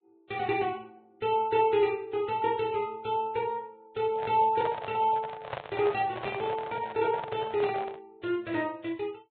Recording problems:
treble missing; nothing above 4 kHz
lossy compression; Vorbis, log-spectral distance 3 dB
handling noise; from 4 to 8 s; peak -1 dB vs average level

